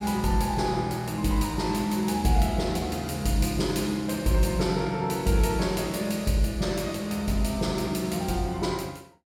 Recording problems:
none

